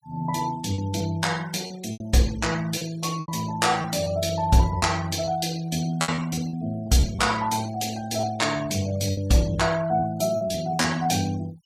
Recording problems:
noise reduction artefacts; signal-to-artefact ratio 19 dB
lost packets; 9% of the sound replaced, filled with repeated pitch periods

